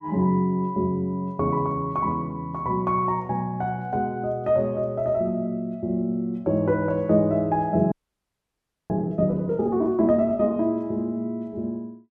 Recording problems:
frozen audio; at 8 s for 1 s

